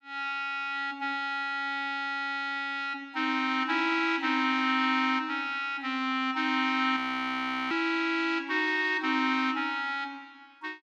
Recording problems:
audio freezing; at 7 s for 0.5 s

